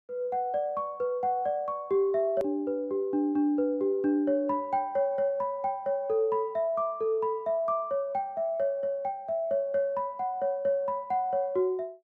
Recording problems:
click at an edit; at 2.5 s

